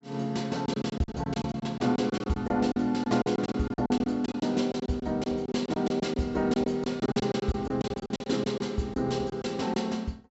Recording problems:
treble missing; nothing above 7.7 kHz
lost packets; 15% of the sound replaced, filled with silence

